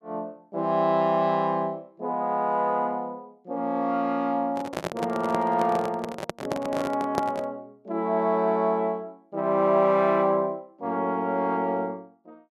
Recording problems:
microphone handling noise; from 4.5 to 7.5 s; peak +2 dB vs average level

